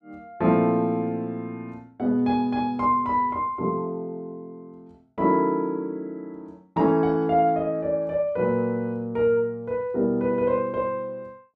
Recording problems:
none

